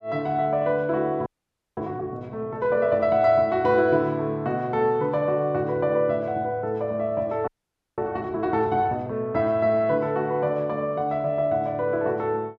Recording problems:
audio freezing; at 1.5 s for 0.5 s and at 7.5 s for 0.5 s

